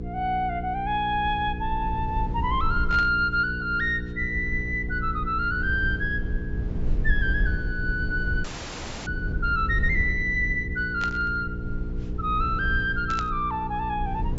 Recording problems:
low-pass filter; nothing above 8 kHz
electrical hum; 60 Hz, harmonics up to 480 Hz, SNR 9 dB
low-frequency rumble; below 74 Hz, SNR 7 dB
burst of static; at 3 s, at 11 s and at 13 s; peak -6 dB vs average level
frozen audio; at 8.5 s for 0.5 s

